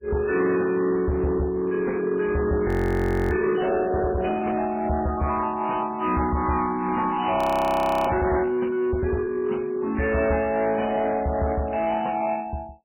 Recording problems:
lossy compression; MP3, log-spectral distance 4 dB, nothing above 20.1 kHz
distortion; soft clipping, signal-to-distortion ratio 10 dB
audio freezing; at 2.5 s for 0.5 s and at 7.5 s for 0.5 s

